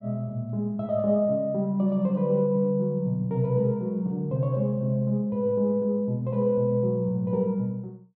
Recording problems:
none

